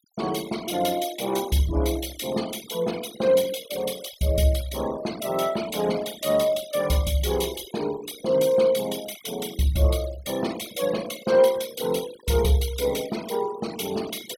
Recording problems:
noise reduction artefacts; signal-to-artefact ratio 15 dB

